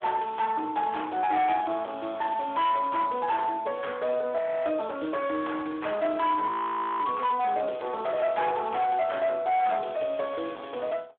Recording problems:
phone line; 260 Hz to 3.5 kHz, Speex
distortion; hard clipping, signal-to-distortion ratio 12 dB
audio freezing; at 4.5 s and at 6.5 s for 0.5 s

